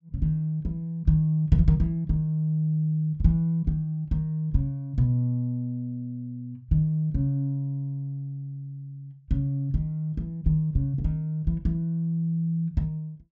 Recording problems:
treble cut off; nothing above 8 kHz

